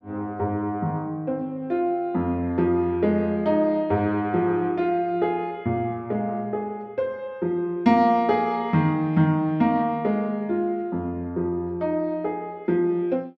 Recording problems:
none

